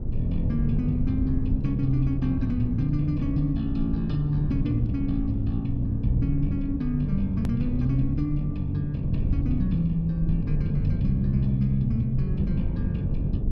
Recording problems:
low-frequency rumble; below 110 Hz, SNR 5 dB
edit click; at 7.5 s

